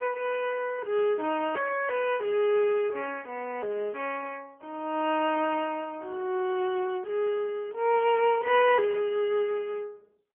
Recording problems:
telephone audio; 320 Hz to 3.2 kHz, AMR-NB

